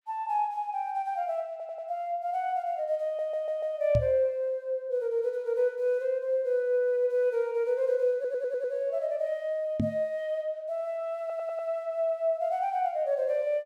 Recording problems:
stutter; 4 times, first at 1.5 s
microphone bump; at 4 s and at 10 s; peak +4 dB vs average level

